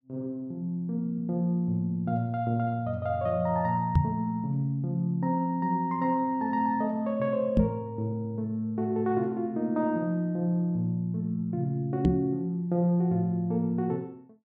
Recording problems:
knock on the microphone; at 4 s, at 7.5 s and at 12 s; peak +9 dB vs average level

